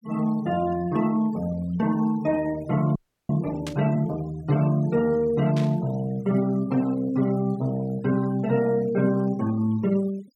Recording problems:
noise reduction artefacts; signal-to-artefact ratio 23 dB
audio freezing; at 3 s
static burst; at 3.5 s and at 5.5 s; peak -8 dB vs average level

